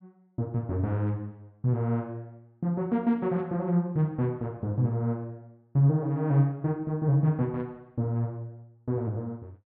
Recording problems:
none

